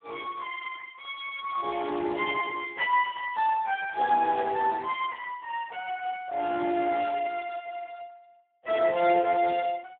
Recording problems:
telephone audio; 300 Hz to 3.5 kHz, Speex

